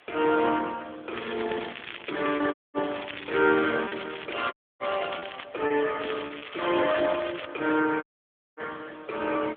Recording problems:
telephone audio; 240 Hz to 3.5 kHz, AMR-NB
hiss; SNR 26 dB
packet loss; 3% of the sound replaced, filled with repeated pitch periods
crackling; from 1 to 5.5 s and from 6 to 7.5 s; loose cable, SNR 11 dB
audio cutting out; at 2.5 s, at 4.5 s and at 8 s for 0.5 s

